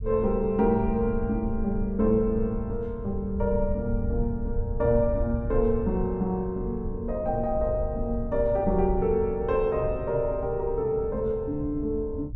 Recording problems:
low-frequency rumble; below 82 Hz, SNR 8 dB

